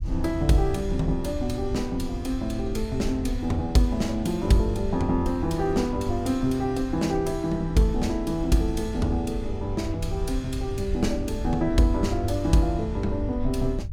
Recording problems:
low-frequency rumble; below 78 Hz, SNR 8 dB

